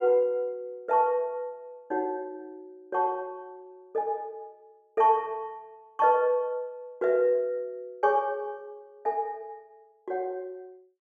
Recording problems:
none

